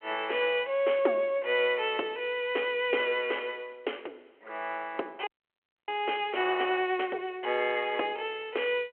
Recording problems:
phone line; 320 Hz to 3.3 kHz, G.726
frozen audio; at 5.5 s for 0.5 s

